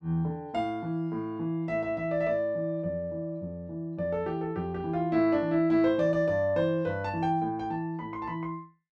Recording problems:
none

